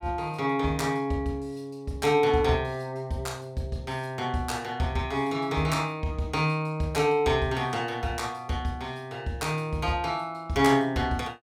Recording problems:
none

